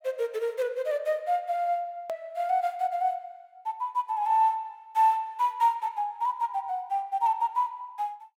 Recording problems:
hard cut with a click; at 2 s

